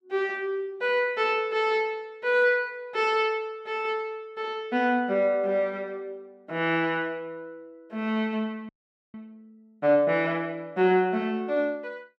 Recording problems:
audio freezing; at 8.5 s

